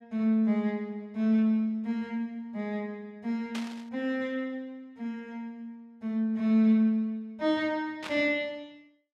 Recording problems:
static burst; at 3.5 s and at 8 s; peak -5 dB vs average level

